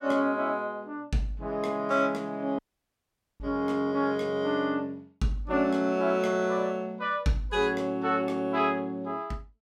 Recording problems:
dropout; at 2.5 s for 1 s

